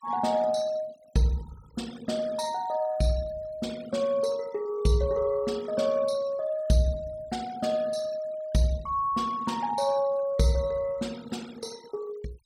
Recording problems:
denoising artefacts; signal-to-artefact ratio 21 dB

